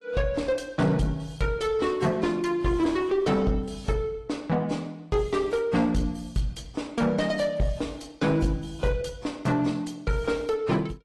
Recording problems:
codec artefacts; AAC, log-spectral distance 2 dB, nothing above 11.3 kHz
distortion; soft clipping, signal-to-distortion ratio 10 dB

